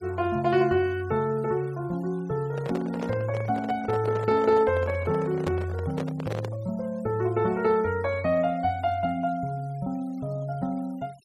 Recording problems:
noise reduction artefacts; signal-to-artefact ratio 26 dB
handling noise; from 2.5 to 6.5 s; peak -1 dB vs average level

